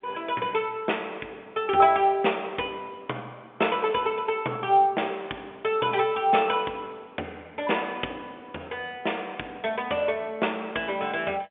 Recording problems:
phone line; 280 Hz to 3.5 kHz, G.711

